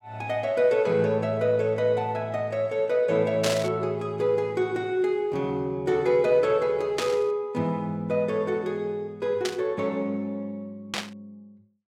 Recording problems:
burst of static; 4 times, first at 3.5 s; peak +1 dB vs average level

